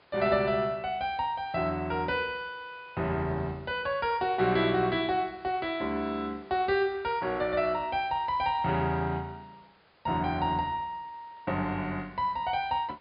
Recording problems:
treble cut off; nothing above 5.1 kHz
background hiss; SNR 29 dB

